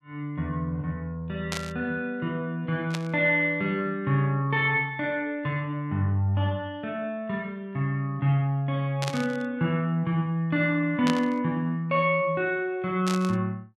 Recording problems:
static burst; 5 times, first at 1.5 s; peak 0 dB vs average level

